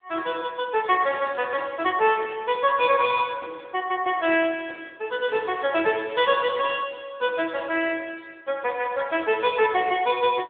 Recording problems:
telephone audio; 280 Hz to 3.6 kHz, AMR-NB

